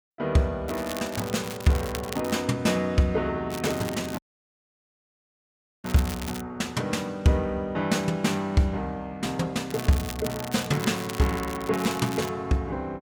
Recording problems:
crackling; from 0.5 to 2.5 s, from 3.5 to 6.5 s and from 9.5 to 12 s; loose cable, SNR 12 dB
audio cutting out; at 4 s for 1.5 s

